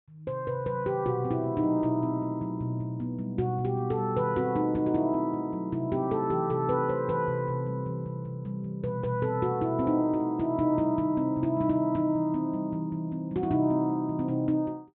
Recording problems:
treble missing; nothing above 4 kHz

